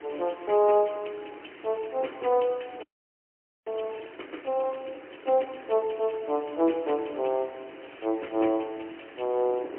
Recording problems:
phone line; 260 Hz to 3.1 kHz, AMR-NB, then MP3
background hiss; SNR 21 dB
wind on the microphone; below 520 Hz, SNR 20 dB
frozen audio; at 3 s for 1 s

